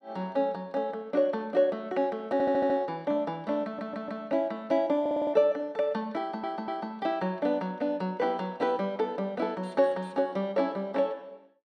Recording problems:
audio stuttering; 4 times, first at 2.5 s

